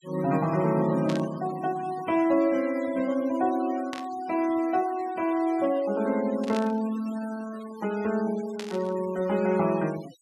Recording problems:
noise reduction artefacts; signal-to-artefact ratio 19 dB
static burst; 4 times, first at 1 s; peak -6 dB vs average level

